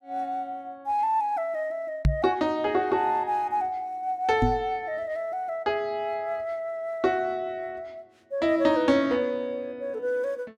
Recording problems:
microphone bump; at 2 s and at 4.5 s; peak +8 dB vs average level

